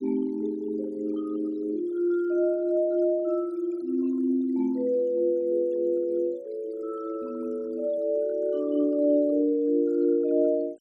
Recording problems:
noise reduction artefacts; signal-to-artefact ratio 27 dB

